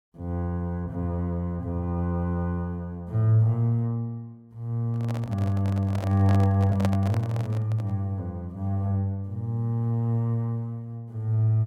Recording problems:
handling noise; from 5 to 8 s; peak 0 dB vs average level

